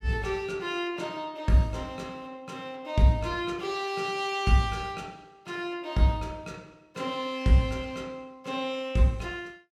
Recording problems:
none

